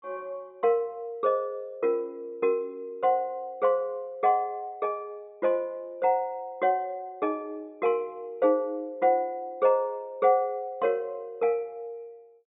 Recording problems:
low-pass filter; nothing above 4 kHz

